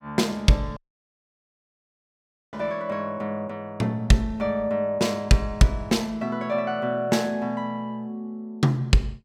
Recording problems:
audio cutting out; at 1 s for 2 s

